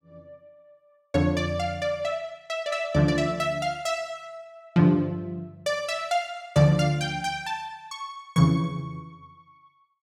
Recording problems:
none

